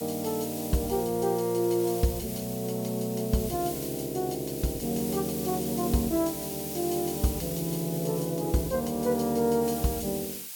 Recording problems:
background hiss; slope +4 dB per octave, SNR 8 dB

